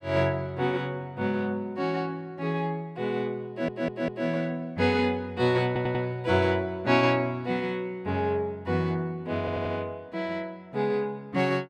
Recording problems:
stutter; at 3.5 s, at 5.5 s and at 9.5 s

